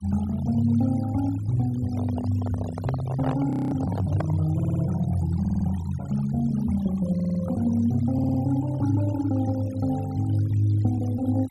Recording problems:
noise reduction artefacts; signal-to-artefact ratio 18 dB
handling noise; from 2 to 4.5 s; peak -3 dB vs average level
frozen audio; at 3.5 s
audio stuttering; 4 times, first at 4.5 s

